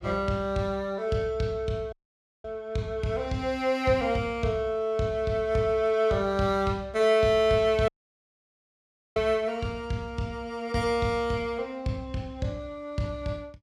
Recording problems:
dropout; at 2 s for 0.5 s and at 8 s for 1.5 s

